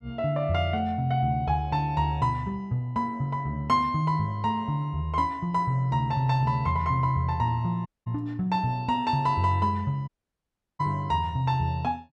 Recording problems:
audio cutting out; at 8 s and at 10 s for 0.5 s

